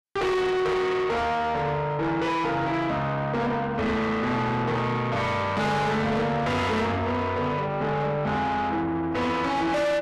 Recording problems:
distorted audio; soft clipping, signal-to-distortion ratio 5 dB

